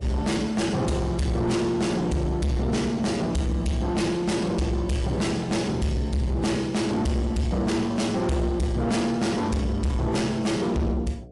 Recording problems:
lossy codec; MP3, log-spectral distance 2 dB, nothing above 11 kHz
distortion; soft clipping, signal-to-distortion ratio 7 dB
hum; 60 Hz, harmonics up to 720 Hz, SNR 21 dB

